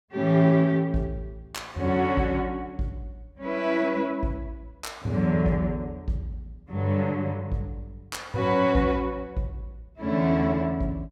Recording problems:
none

